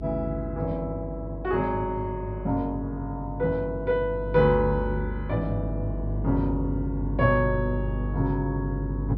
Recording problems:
treble cut off; nothing above 5.7 kHz
electrical hum; 50 Hz, harmonics up to 500 Hz, SNR 5 dB

